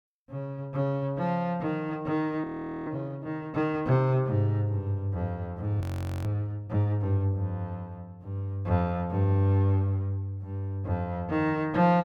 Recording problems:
frozen audio; at 2.5 s and at 6 s

